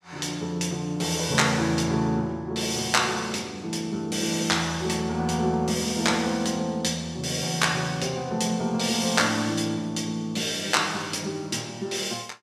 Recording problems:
none

